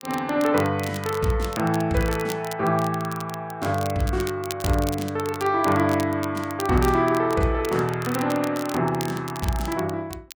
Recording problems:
crackling; vinyl, SNR 15 dB

